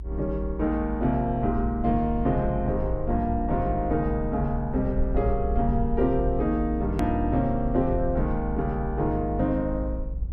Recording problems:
rumble; below 58 Hz, strongest tone 56 Hz, SNR 6 dB
click at an edit; at 7 s

